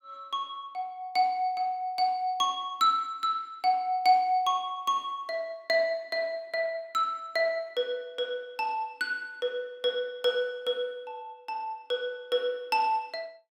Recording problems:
none

